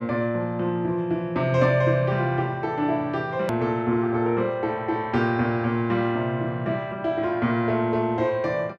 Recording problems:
click at an edit; at 3.5 s

